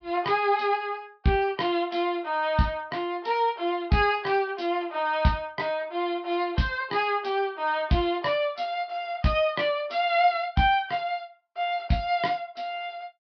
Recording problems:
low-pass filter; nothing above 5.5 kHz

